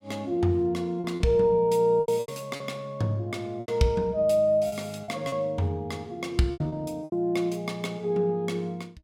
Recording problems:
packet loss; 8% of the sound replaced, filled with repeated pitch periods

